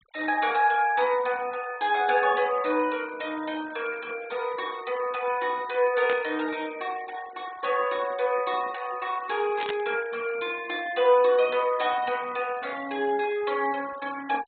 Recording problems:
low-pass filter; nothing above 4 kHz
noise reduction artefacts; signal-to-artefact ratio 20 dB
static burst; at 6 s and at 9.5 s; peak -2 dB vs average level

